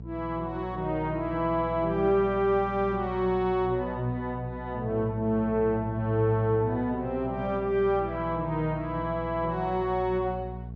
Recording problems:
mains hum; 60 Hz, harmonics up to 480 Hz, SNR 12 dB

